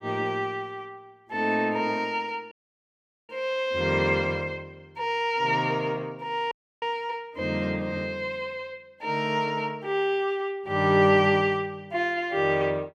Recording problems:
audio cutting out; at 2.5 s for 1 s and at 6.5 s

